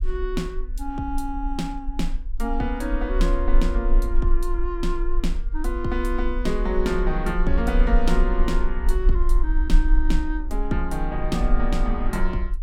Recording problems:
low-frequency rumble; below 40 Hz, strongest tone 24 Hz, SNR -1 dB

